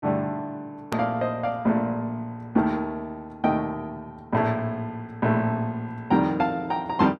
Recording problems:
click at an edit; at 1 s

